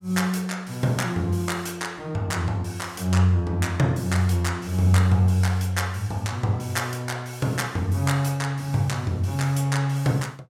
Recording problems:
none

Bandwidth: 16 kHz